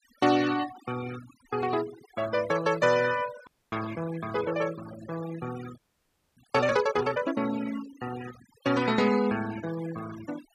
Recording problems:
noise reduction artefacts; signal-to-artefact ratio 14 dB
audio freezing; at 3.5 s and at 6 s for 0.5 s

